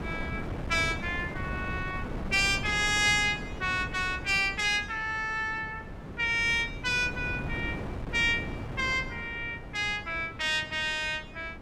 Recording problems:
wind on the microphone; below 420 Hz, SNR 11 dB

